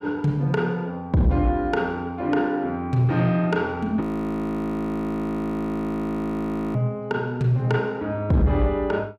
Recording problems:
distortion; soft clipping, signal-to-distortion ratio 10 dB
frozen audio; at 4 s for 2.5 s

